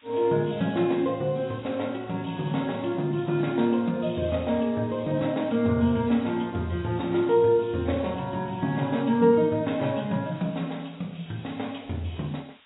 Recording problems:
lossy compression; AAC, log-spectral distance 8 dB, nothing above 3.8 kHz
background hiss; SNR 29 dB

